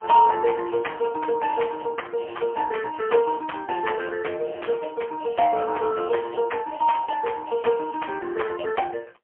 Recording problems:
phone line; 170 Hz to 3.2 kHz, AMR-NB, then MP3

